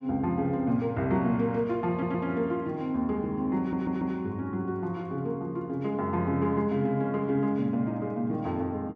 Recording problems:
audio stuttering; at 2 s and at 3.5 s

